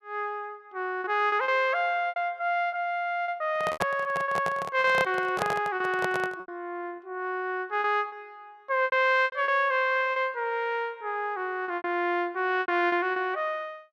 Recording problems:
packet loss; 9% of the sound replaced, filled with repeated pitch periods
microphone handling noise; from 3.5 to 6.5 s; peak +3 dB vs average level

